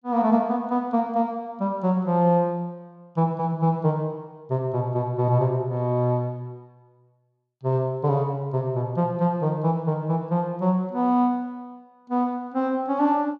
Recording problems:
none

